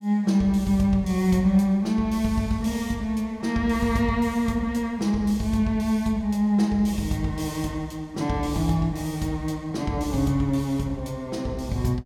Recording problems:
none

